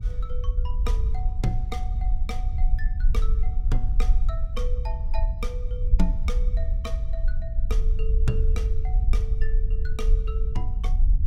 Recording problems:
hum; 60 Hz, harmonics up to 480 Hz, SNR 12 dB
low-frequency rumble; below 50 Hz, SNR -10 dB

